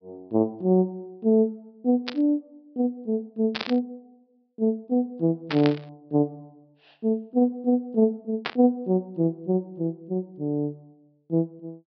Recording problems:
treble cut off; nothing above 5.5 kHz
burst of static; 4 times, first at 2 s; peak +1 dB vs average level

